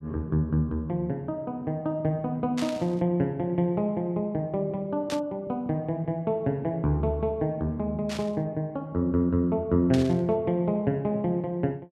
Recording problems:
burst of static; 4 times, first at 2.5 s; peak -4 dB vs average level

